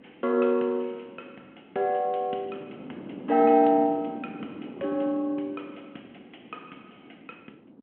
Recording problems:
telephone audio; 190 Hz to 3.3 kHz, G.726
wind on the microphone; below 400 Hz, SNR 18 dB

